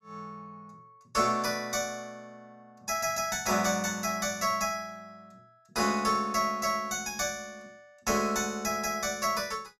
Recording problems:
none

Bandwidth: 13 kHz